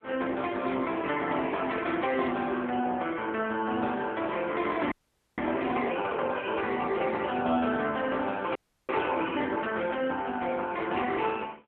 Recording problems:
telephone audio; 220 Hz to 3.5 kHz, AMR-NB
audio freezing; at 5 s and at 8.5 s

